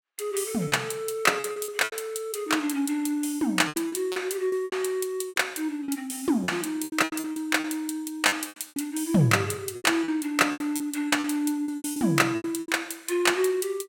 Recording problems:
packet loss; 13% of the sound replaced, filled with repeated pitch periods

